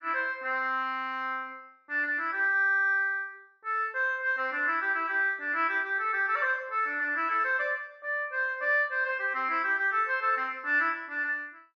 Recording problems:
none

